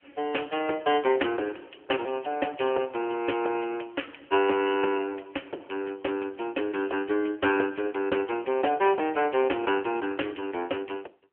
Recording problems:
telephone audio; 300 Hz to 3.2 kHz, AMR-NB

